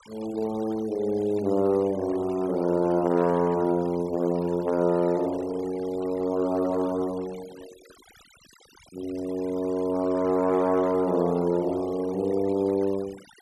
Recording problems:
denoising artefacts; signal-to-artefact ratio 21 dB

